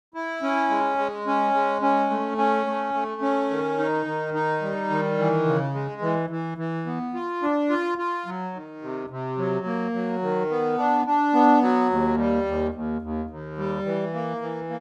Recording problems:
none

